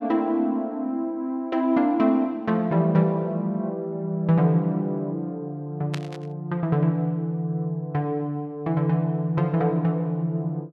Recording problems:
static burst; at 6 s; peak -5 dB vs average level

